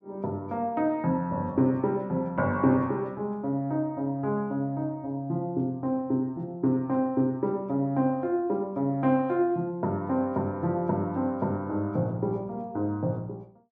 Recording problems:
none

